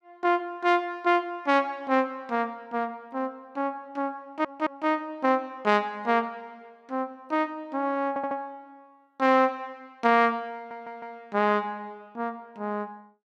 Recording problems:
audio stuttering; at 4 s, at 8 s and at 11 s

